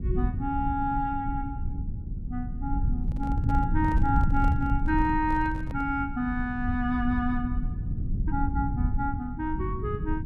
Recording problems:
rumble; below 110 Hz, SNR 1 dB
microphone handling noise; from 3 to 6 s; peak -10 dB vs average level

